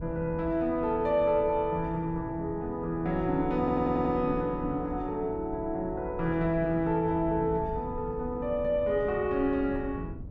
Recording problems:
wind noise; below 170 Hz, SNR 13 dB
stutter; at 3.5 s

